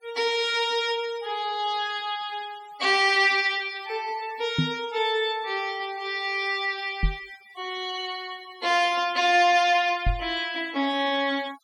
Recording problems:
denoising artefacts; signal-to-artefact ratio 21 dB
knock on the microphone; at 4.5 s, at 7 s and at 10 s; peak +4 dB vs average level

